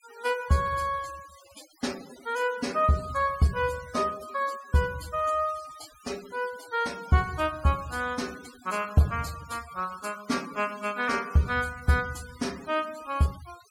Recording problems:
denoising artefacts; signal-to-artefact ratio 19 dB

